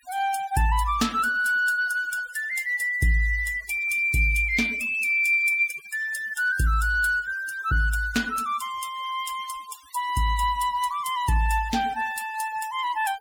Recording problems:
noise reduction artefacts; signal-to-artefact ratio 20 dB

